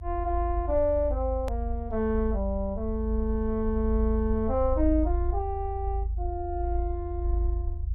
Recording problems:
rumble; below 78 Hz, strongest tone 52 Hz, SNR 2 dB
edit click; at 1.5 s

